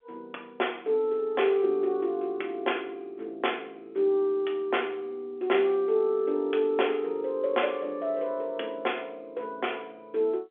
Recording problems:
telephone audio; 320 Hz to 3.5 kHz, G.711

